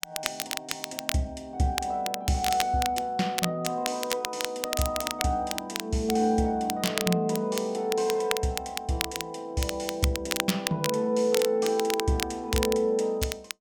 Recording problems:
crackling; vinyl, SNR 5 dB

